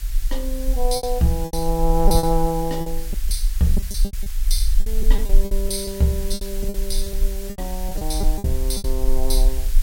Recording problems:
hiss; slope +2 dB per octave, SNR 12 dB
rumble; below 38 Hz, strongest tone 18 Hz, SNR 1 dB
lost packets; 12% of the sound replaced, filled with repeated pitch periods

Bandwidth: 16.5 kHz